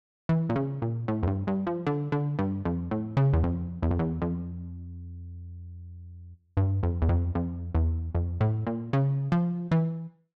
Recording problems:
none

